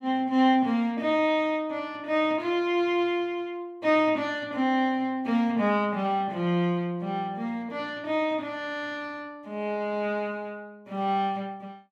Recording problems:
none

